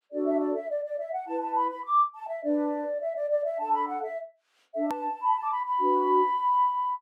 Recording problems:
hard cut with a click; at 5 s

